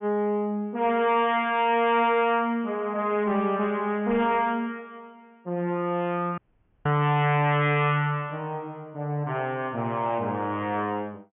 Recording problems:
treble cut off; nothing above 3.3 kHz
distortion; hard clipping, uneven, signal-to-distortion ratio 11 dB
dropout; at 6.5 s

